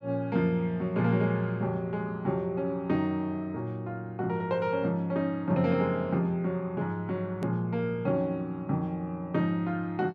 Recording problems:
click at an edit; at 7.5 s

